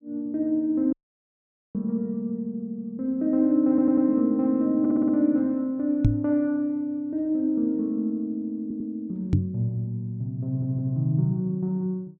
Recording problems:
dropout; at 1 s for 1 s
audio stuttering; 4 times, first at 3.5 s
microphone thump; at 6 s and at 9.5 s; peak +9 dB vs average level

